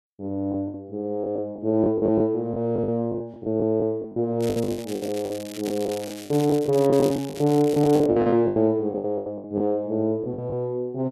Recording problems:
lost packets; 15% of the sound replaced, filled with the last packet
crackling; from 4.5 to 8 s; loose cable, SNR 16 dB

